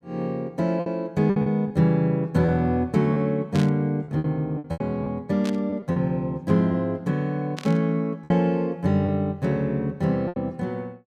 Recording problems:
packet loss; 7% of the sound replaced, filled with repeated pitch periods
burst of static; at 3.5 s, at 5.5 s and at 7.5 s; peak -7 dB vs average level

